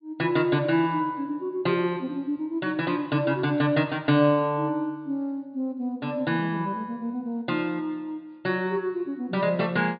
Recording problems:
low-pass filter; nothing above 4.8 kHz

